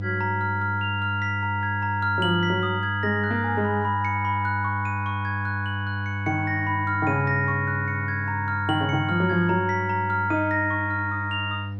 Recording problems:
mains hum; 50 Hz, harmonics up to 500 Hz, SNR 6 dB

